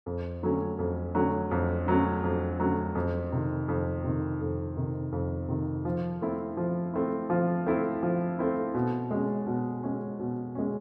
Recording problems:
none

